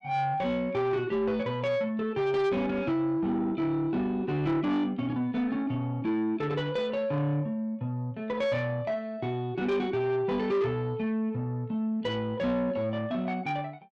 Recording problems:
distortion; soft clipping, signal-to-distortion ratio 11 dB

